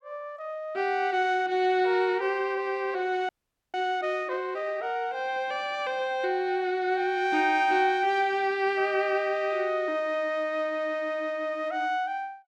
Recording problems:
audio freezing; at 3.5 s

